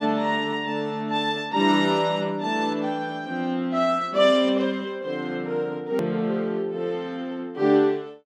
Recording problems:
click at an edit; at 6 s

